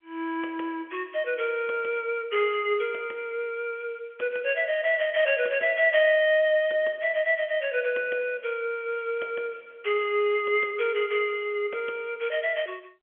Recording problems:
phone line; 340 Hz to 3.4 kHz, G.711

